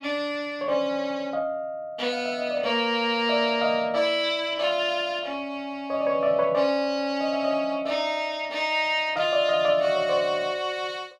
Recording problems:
none

